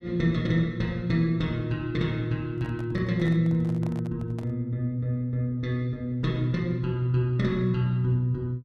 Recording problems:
handling noise; from 2.5 to 4.5 s; peak -12 dB vs average level

